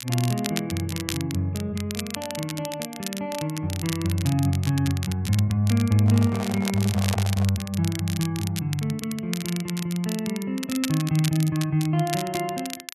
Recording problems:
crackle; vinyl, SNR 10 dB
microphone handling noise; from 6 to 7.5 s; peak -3 dB vs average level

